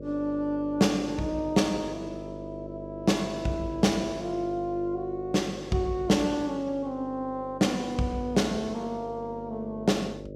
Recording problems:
hum; 50 Hz, harmonics up to 600 Hz, SNR 13 dB

